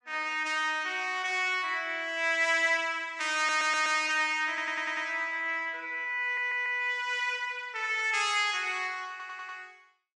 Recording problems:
lossy codec; MP3, log-spectral distance 2 dB, nothing above 10.4 kHz
audio stuttering; 4 times, first at 3.5 s

